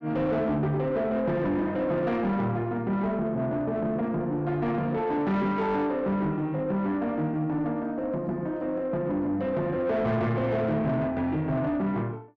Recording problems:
distortion; soft clipping, signal-to-distortion ratio 10 dB

